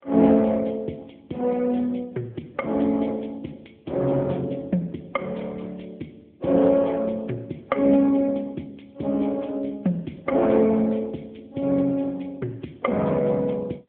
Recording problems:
telephone audio; 190 Hz to 3.7 kHz, AMR-NB

